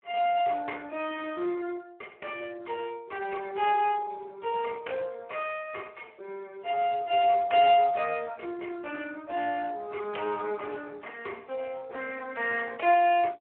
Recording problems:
telephone audio; 300 Hz to 3.1 kHz, Speex

